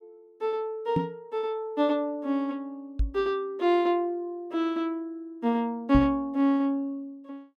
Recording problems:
microphone thump; at 1 s, at 3 s and at 6 s; peak +4 dB vs average level

